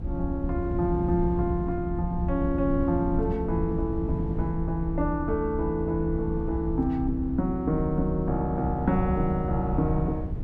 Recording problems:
rumble; below 130 Hz, SNR 5 dB

